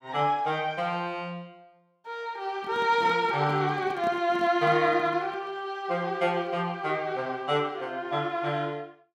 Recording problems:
microphone handling noise; from 2.5 to 5.5 s; peak -7 dB vs average level

